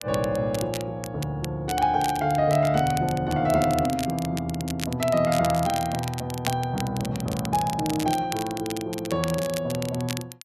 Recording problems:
crackle; vinyl, SNR 11 dB

